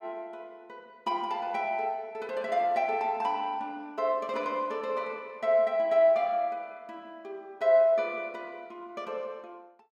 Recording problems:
none

